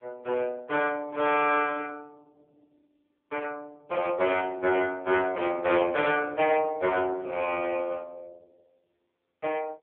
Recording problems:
telephone audio; 320 Hz to 3.2 kHz, AMR-NB
distortion; hard clipping, uneven, signal-to-distortion ratio 15 dB

